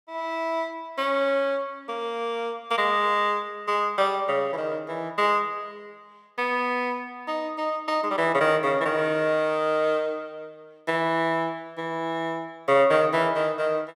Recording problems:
none

